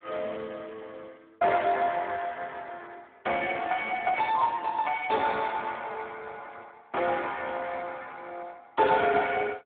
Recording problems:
phone line; 280 Hz to 3.6 kHz, Speex

